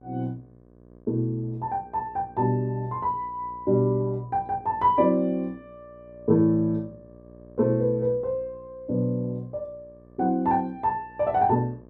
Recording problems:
electrical hum; 60 Hz, harmonics up to 1.2 kHz, SNR 25 dB

